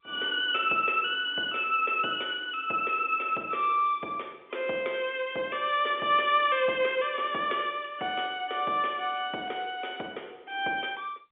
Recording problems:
phone line; 280 Hz to 3.6 kHz, G.711

